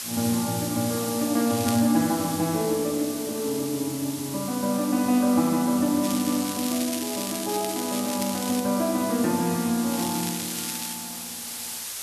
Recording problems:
hiss; slope +2 dB per octave, SNR 8 dB
crackle; at 1.5 s, from 6 to 8.5 s and from 10 to 11 s; loose cable, SNR 8 dB

